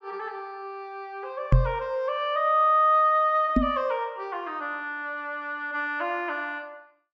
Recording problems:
treble cut off; nothing above 8 kHz
knock on the microphone; at 1.5 s and at 3.5 s; peak +9 dB vs average level

